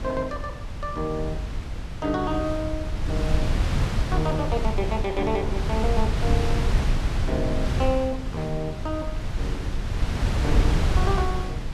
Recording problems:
wind noise; below 120 Hz, SNR -2 dB

